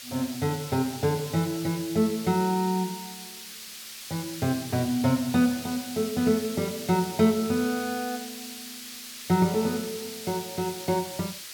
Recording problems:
hiss; SNR 11 dB

